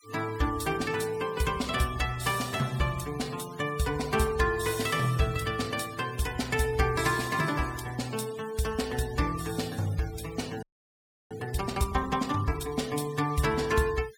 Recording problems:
denoising artefacts; signal-to-artefact ratio 16 dB
audio freezing; at 11 s for 0.5 s

